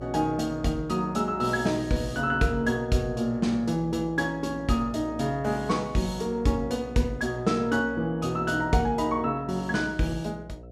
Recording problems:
hum; 60 Hz, harmonics up to 720 Hz, SNR 17 dB

